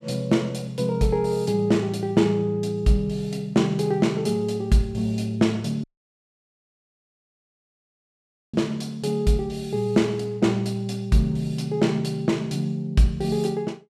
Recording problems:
audio cutting out; at 6 s for 2.5 s

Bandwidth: 14.5 kHz